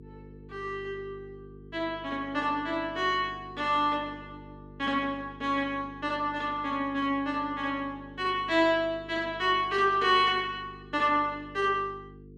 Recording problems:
hum; 50 Hz, harmonics up to 450 Hz, SNR 20 dB

